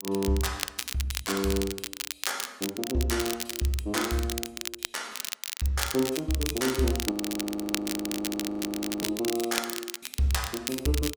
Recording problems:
crackling; vinyl, SNR 3 dB
audio freezing; at 7 s for 2 s

